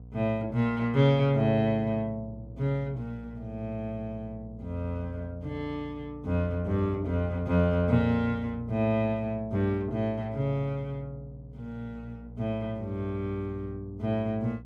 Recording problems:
hum; 60 Hz, harmonics up to 540 Hz, SNR 16 dB

